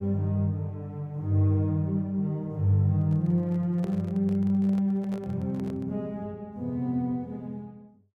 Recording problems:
microphone handling noise; from 3 to 6 s; peak -10 dB vs average level

